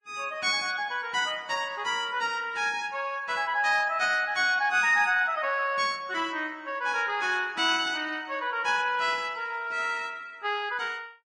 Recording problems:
lossy codec; Vorbis, log-spectral distance 2 dB, nothing above 10.1 kHz

